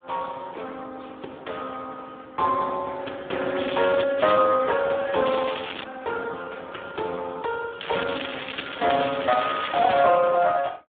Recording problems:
telephone audio; 320 Hz to 3.6 kHz, Speex
crackling; 4 times, first at 3.5 s; loose cable, SNR 11 dB

